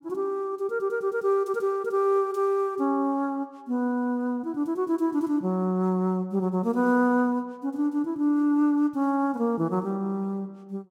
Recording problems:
none

